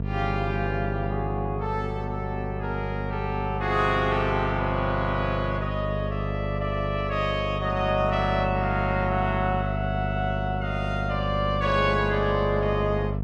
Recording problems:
electrical hum; 50 Hz, harmonics up to 700 Hz, SNR 3 dB

